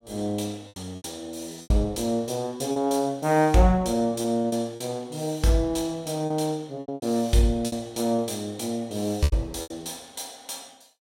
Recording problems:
packet loss; 8% of the sound replaced, filled with repeated pitch periods

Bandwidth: 16.5 kHz